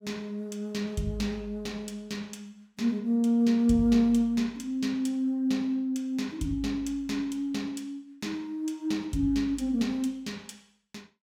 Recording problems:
none

